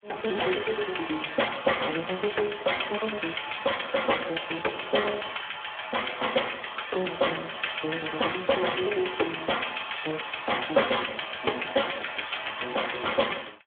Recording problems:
telephone audio; 280 Hz to 3.4 kHz, Speex

